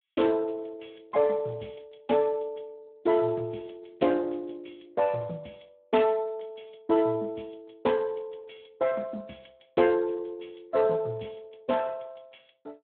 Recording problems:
telephone audio; 170 Hz to 3.6 kHz, Speex

